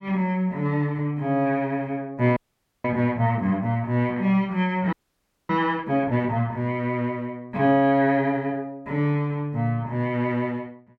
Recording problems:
frozen audio; at 2.5 s and at 5 s for 0.5 s

